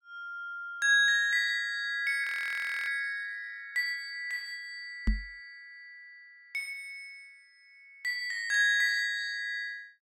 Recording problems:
audio freezing; at 2 s for 0.5 s
knock on the microphone; at 5 s; peak +3 dB vs average level

